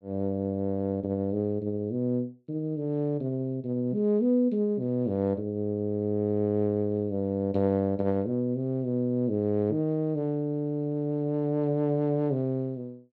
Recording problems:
none

